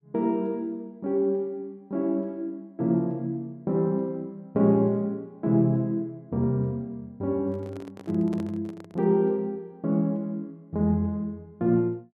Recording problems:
handling noise; from 7.5 to 9 s; peak -9 dB vs average level

